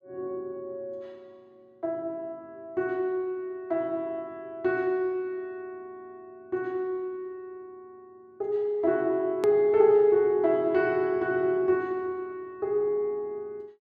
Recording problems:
edit click; at 9.5 s

